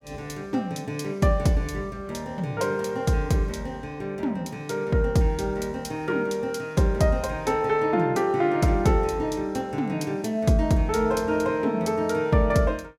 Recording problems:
none

